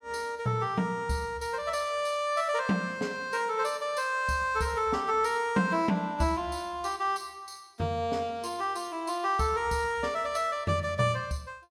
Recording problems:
none

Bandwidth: 16 kHz